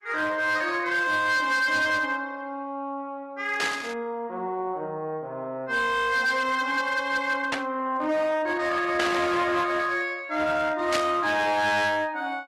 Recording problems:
lossy codec; Opus, log-spectral distance 2 dB, nothing above 12.7 kHz
distortion; hard clipping, uneven, signal-to-distortion ratio 11 dB
static burst; 4 times, first at 3.5 s; peak +2 dB vs average level

